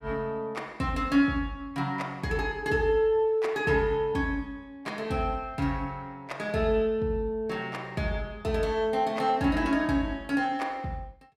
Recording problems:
none

